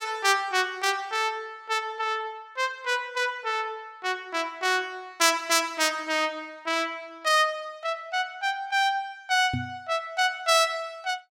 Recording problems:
microphone thump; at 9.5 s; peak -1 dB vs average level

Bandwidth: 17 kHz